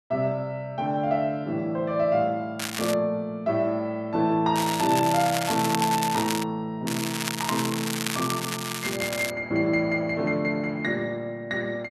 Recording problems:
crackle; at 2.5 s, from 4.5 to 6.5 s and from 7 to 9.5 s; loose cable, SNR 5 dB

